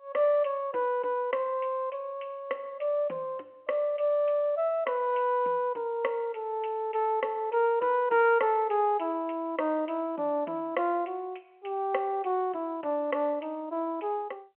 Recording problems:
phone line; 240 Hz to 3.1 kHz, G.711

